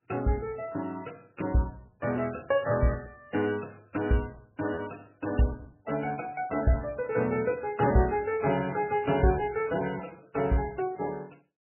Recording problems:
lossy codec; MP3, log-spectral distance 4 dB, nothing above 2.5 kHz
lost packets; 4% of the sound replaced, filled with repeated pitch periods

